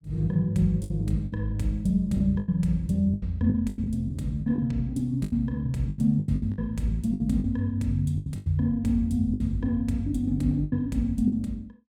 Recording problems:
packet loss; 11% of the sound replaced, filled with the last packet

